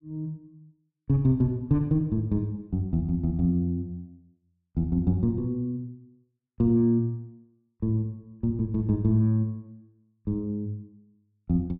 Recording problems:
none

